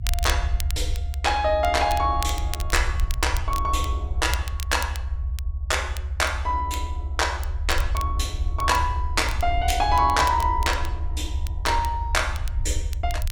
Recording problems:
low-frequency rumble; below 74 Hz, SNR 3 dB
crackle; vinyl, SNR 14 dB

